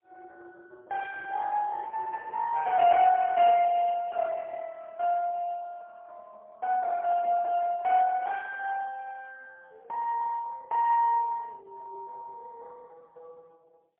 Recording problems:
phone line; 300 Hz to 3.6 kHz, AMR-NB, then MP3

